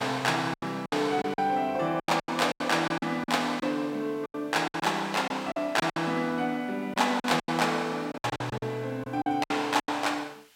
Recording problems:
background hiss; SNR 29 dB
lost packets; 13% of the sound replaced, filled with silence

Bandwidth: 16.5 kHz